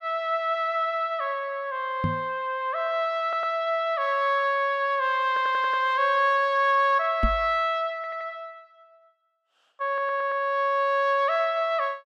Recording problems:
microphone bump; at 2 s and at 7 s; peak +2 dB vs average level
stutter; 4 times, first at 3 s

